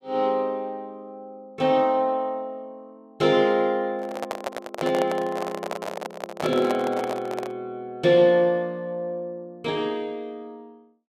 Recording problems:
handling noise; from 4 to 7.5 s; peak 0 dB vs average level

